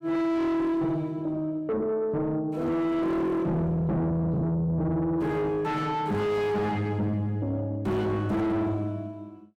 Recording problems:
distortion; soft clipping, signal-to-distortion ratio 5 dB

